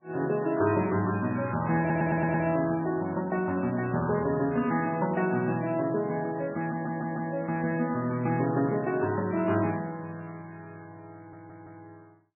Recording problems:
lossy codec; MP3, log-spectral distance 3 dB, nothing above 2.7 kHz
audio stuttering; at 2 s, at 6.5 s and at 11 s

